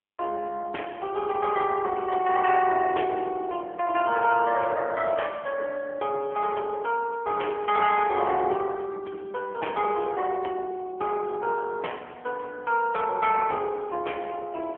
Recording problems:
phone line; 320 Hz to 3.3 kHz, AMR-NB

